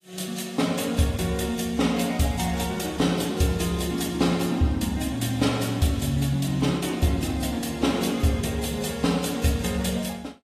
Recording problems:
codec artefacts; AAC, log-spectral distance 4 dB, nothing above 14.3 kHz

